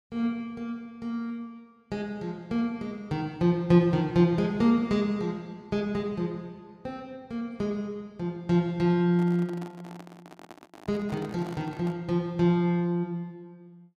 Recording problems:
microphone handling noise; from 9 to 12 s; peak -12 dB vs average level

